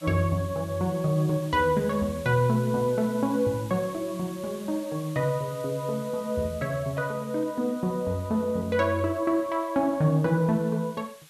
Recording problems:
hiss; SNR 21 dB

